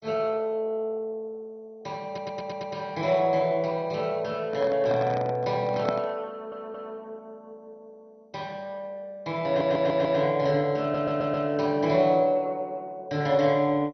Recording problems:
lossy codec; MP2, log-spectral distance 2 dB, nothing above 6 kHz
audio stuttering; 4 times, first at 2 s
handling noise; from 4.5 to 6 s; peak +1 dB vs average level

